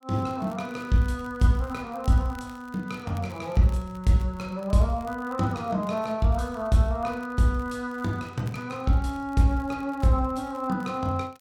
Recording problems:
crackling; vinyl, SNR 29 dB

